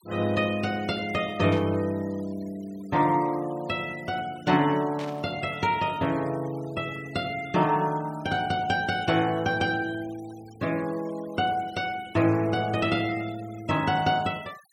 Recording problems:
denoising artefacts; signal-to-artefact ratio 22 dB
static burst; at 1.5 s and at 5 s; peak -10 dB vs average level

